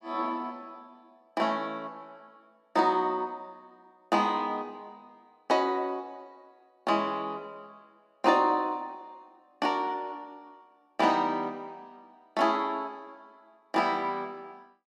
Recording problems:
none

